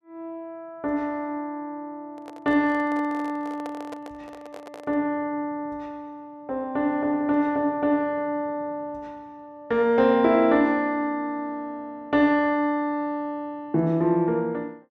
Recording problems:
microphone handling noise; from 2 to 5 s; peak -10 dB vs average level

